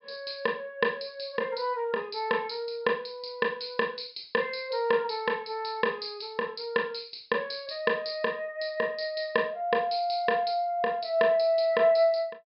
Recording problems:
low-pass filter; nothing above 5.5 kHz

